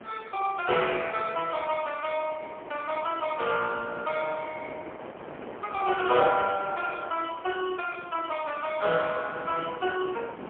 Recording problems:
phone line; 280 Hz to 3.4 kHz, AMR-NB, then MP3
wind noise; below 1 kHz, SNR 14 dB

